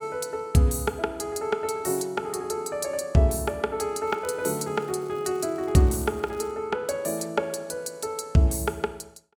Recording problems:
crackle; from 4 to 6.5 s; loose cable, SNR 28 dB

